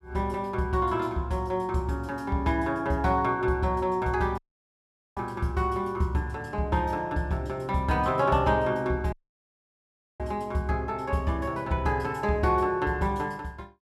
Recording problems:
audio cutting out; at 4.5 s for 1 s and at 9 s for 1 s

